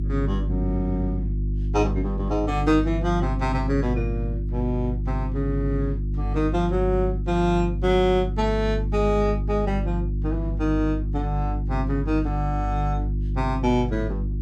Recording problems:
hum; 50 Hz, harmonics up to 350 Hz, SNR 2 dB

